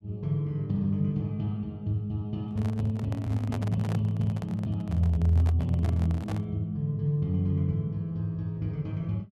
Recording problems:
microphone handling noise; from 2.5 to 6.5 s; peak -5 dB vs average level

